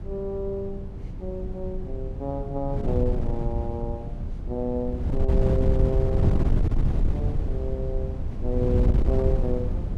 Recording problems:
wind noise; below 110 Hz, SNR -4 dB

